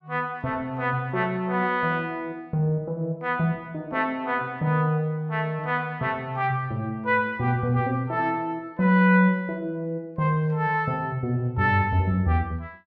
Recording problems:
none

